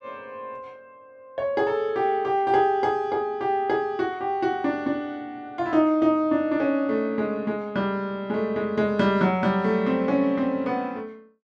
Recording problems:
none

